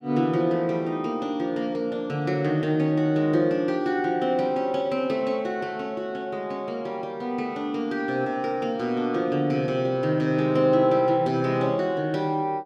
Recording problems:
none

